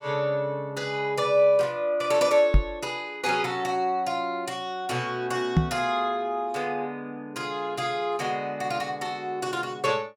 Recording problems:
microphone bump; at 2.5 s and at 5.5 s; peak +9 dB vs average level

